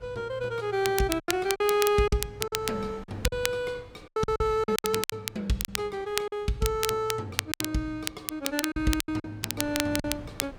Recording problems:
wind on the microphone; below 560 Hz, SNR 22 dB
crackling; vinyl, SNR 4 dB
lost packets; 10% of the sound replaced, filled with silence

